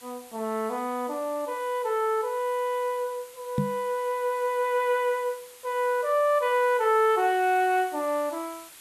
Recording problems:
background hiss; SNR 21 dB
microphone thump; at 3.5 s; peak +3 dB vs average level

